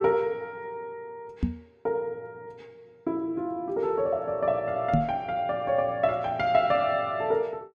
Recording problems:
microphone thump; at 1.5 s and at 5 s; peak +6 dB vs average level

